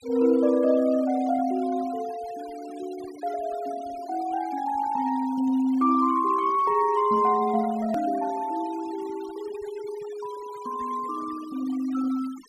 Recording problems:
denoising artefacts; signal-to-artefact ratio 21 dB
edit click; at 8 s

